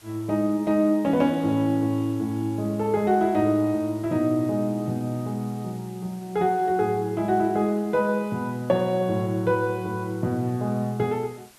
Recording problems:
hiss; slope -1 dB per octave, SNR 26 dB

